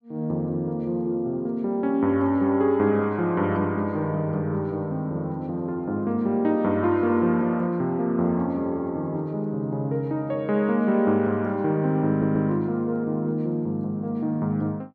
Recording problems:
audio stuttering; at 12 s

